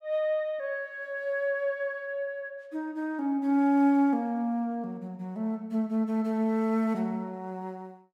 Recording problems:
none

